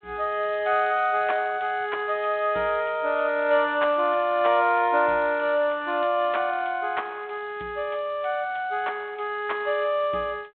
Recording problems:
telephone audio; 220 Hz to 3.7 kHz, G.726

